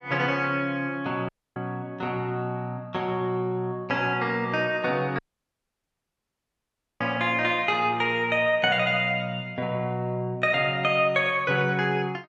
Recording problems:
dropout; at 1.5 s and at 5 s for 2 s

